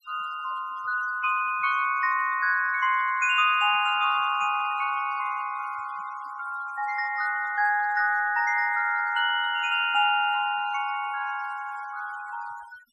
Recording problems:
noise reduction artefacts; signal-to-artefact ratio 20 dB

